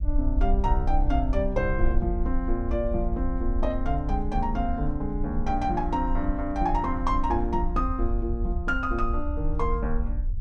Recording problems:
rumble; below 56 Hz, SNR 2 dB

